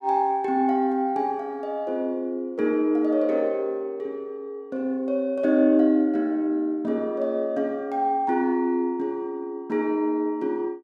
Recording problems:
none

